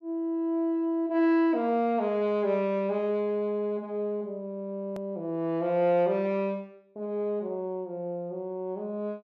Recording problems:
edit click; at 5 s

